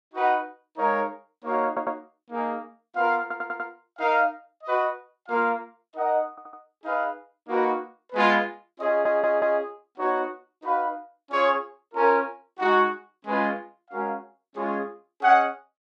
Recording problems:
audio stuttering; 4 times, first at 1.5 s

